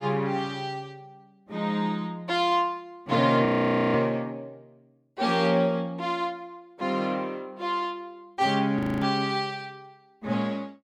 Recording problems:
frozen audio; at 3.5 s and at 9 s

